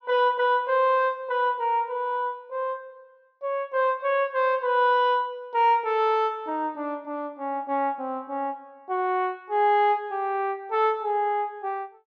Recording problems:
treble missing; nothing above 6.2 kHz

